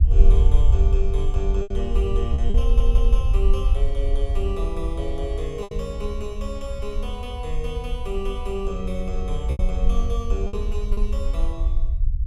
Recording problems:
low-frequency rumble; below 56 Hz, SNR -7 dB
lost packets; 4% of the sound replaced, filled with repeated pitch periods
audio stuttering; at 2.5 s

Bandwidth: 15.5 kHz